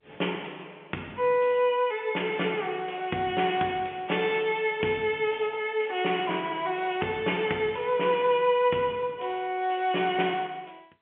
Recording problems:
telephone audio; 220 Hz to 3.2 kHz, G.711

